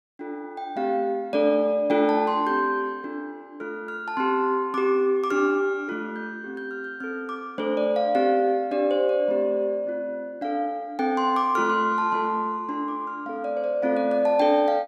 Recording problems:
none

